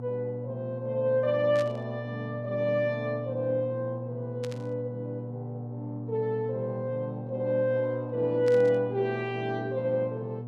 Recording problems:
electrical hum; 60 Hz, harmonics up to 720 Hz, SNR 8 dB
static burst; at 1.5 s, at 4.5 s and at 8.5 s; peak -9 dB vs average level

